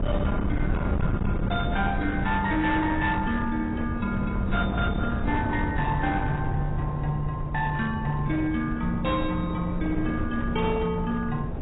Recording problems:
lossy compression; AAC, log-spectral distance 2 dB, nothing above 3.6 kHz
distorted audio; hard clipping, signal-to-distortion ratio 12 dB
wind on the microphone; below 230 Hz, SNR 3 dB

